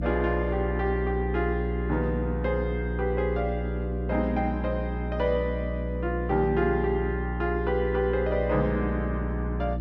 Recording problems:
hum; 60 Hz, harmonics up to 360 Hz, SNR 3 dB

